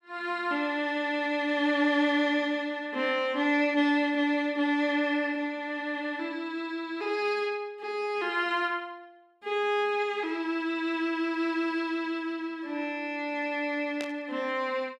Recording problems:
static burst; at 14 s; peak -6 dB vs average level

